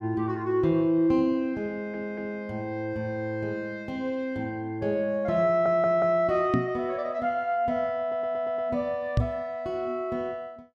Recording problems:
stutter; at 1.5 s, at 5.5 s and at 8 s
microphone bump; at 6.5 s and at 9 s; peak +7 dB vs average level

